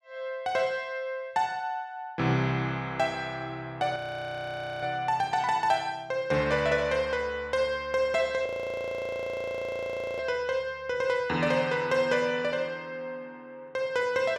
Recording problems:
frozen audio; at 4 s for 1 s and at 8.5 s for 1.5 s

